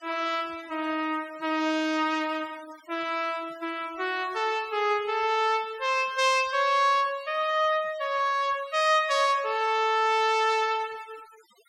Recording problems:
noise reduction artefacts; signal-to-artefact ratio 24 dB

